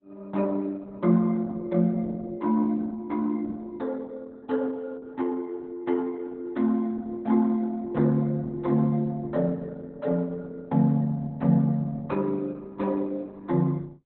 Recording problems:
lossy codec; Opus, log-spectral distance 2 dB, nothing above 4 kHz

